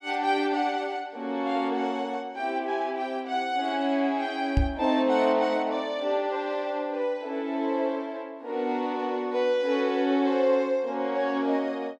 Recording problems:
knock on the microphone; at 4.5 s; peak +6 dB vs average level

